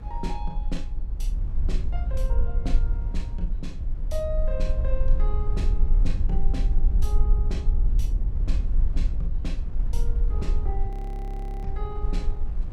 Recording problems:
hum; 50 Hz, harmonics up to 350 Hz, SNR 19 dB
rumble; below 46 Hz, SNR -10 dB
wind noise; below 430 Hz, SNR 13 dB
audio freezing; at 11 s for 0.5 s

